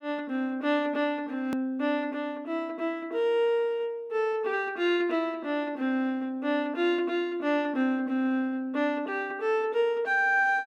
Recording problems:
edit click; at 1.5 s

